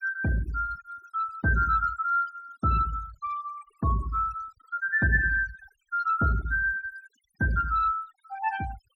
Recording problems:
denoising artefacts; signal-to-artefact ratio 19 dB

